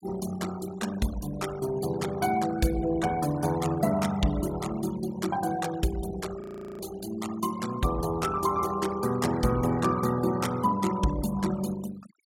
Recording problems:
denoising artefacts; signal-to-artefact ratio 14 dB
frozen audio; at 6.5 s

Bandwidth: 16.5 kHz